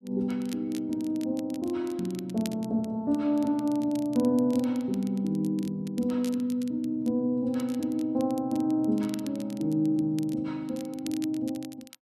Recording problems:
crackle; vinyl, SNR 21 dB

